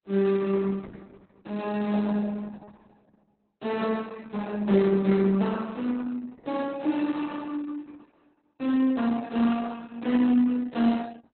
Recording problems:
codec artefacts; Opus, log-spectral distance 3 dB, nothing above 4 kHz

